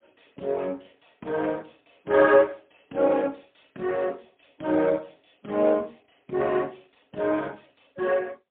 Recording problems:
telephone audio; 190 Hz to 3.7 kHz, AMR-NB, then MP3

